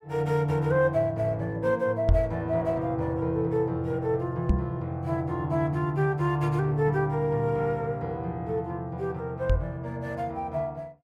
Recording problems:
knock on the microphone; at 2 s, at 4.5 s and at 9.5 s; peak +8 dB vs average level

